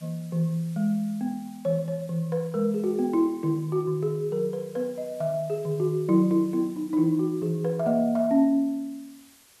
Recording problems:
hiss; slope 0 dB per octave, SNR 27 dB

